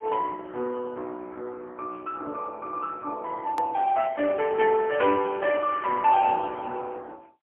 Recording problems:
phone line; 220 Hz to 3 kHz, AMR-NB, then MP3
hard cut with a click; at 3.5 s

